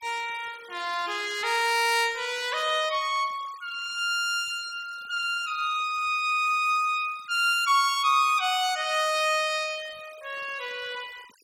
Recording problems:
noise reduction artefacts; signal-to-artefact ratio 22 dB

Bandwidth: 16.5 kHz